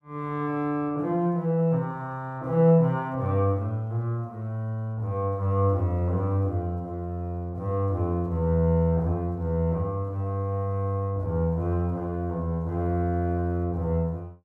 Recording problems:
none

